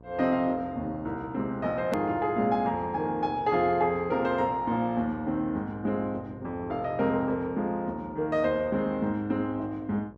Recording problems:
electrical hum; 60 Hz, harmonics up to 1.1 kHz, SNR 24 dB
edit click; at 2 s

